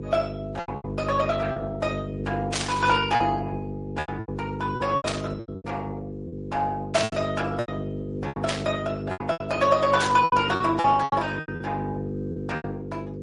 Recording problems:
lossy compression; Opus, then MP3, log-spectral distance 3 dB
hum; 50 Hz, harmonics up to 500 Hz, SNR 6 dB
packet loss; 12% of the sound replaced, filled with repeated pitch periods
burst of static; 5 times, first at 2.5 s; peak +2 dB vs average level

